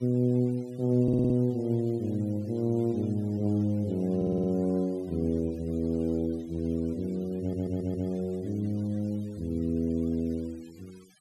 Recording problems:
denoising artefacts; signal-to-artefact ratio 28 dB
stutter; at 1 s, at 4 s and at 7.5 s

